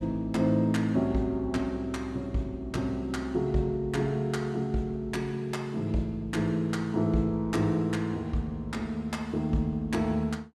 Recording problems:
none

